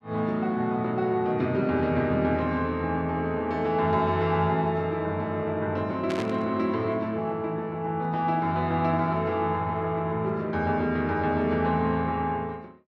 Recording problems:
burst of static; at 6 s; peak -6 dB vs average level

